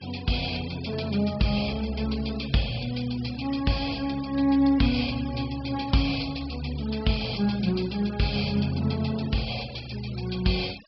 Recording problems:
low-pass filter; nothing above 5.4 kHz
noise reduction artefacts; signal-to-artefact ratio 17 dB

